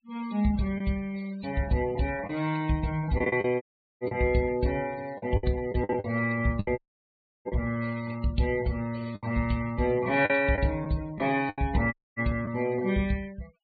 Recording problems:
treble cut off; nothing above 4.5 kHz
denoising artefacts; signal-to-artefact ratio 21 dB
lost packets; 6% of the sound replaced, filled with the last packet
dropout; at 3.5 s, at 7 s for 0.5 s and at 12 s

